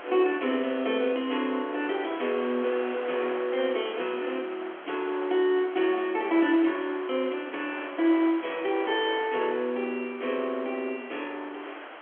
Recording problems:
phone line; 280 Hz to 3.4 kHz, G.711
background hiss; SNR 14 dB

